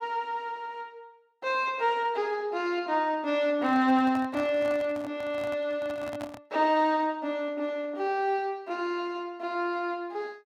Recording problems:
handling noise; from 3.5 to 6.5 s; peak -8 dB vs average level

